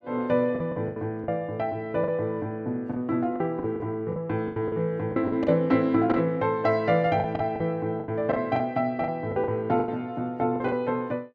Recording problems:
lost packets; 11% of the sound replaced, filled with the last packet

